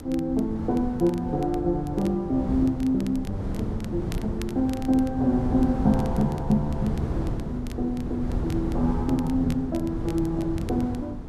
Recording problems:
wind on the microphone; below 250 Hz, SNR 6 dB
crackling; vinyl, SNR 23 dB

